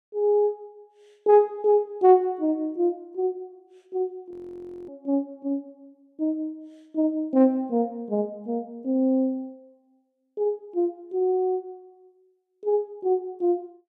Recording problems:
audio freezing; at 4.5 s for 0.5 s

